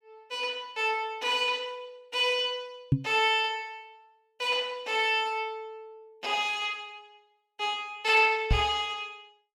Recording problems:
microphone bump; at 3 s and at 8.5 s; peak +8 dB vs average level

